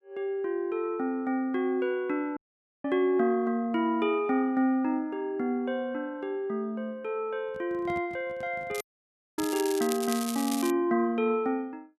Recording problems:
audio cutting out; at 2.5 s and at 9 s for 0.5 s
handling noise; from 7.5 to 9.5 s; peak -9 dB vs average level
crackle; from 8.5 to 11 s; loose cable, SNR 9 dB

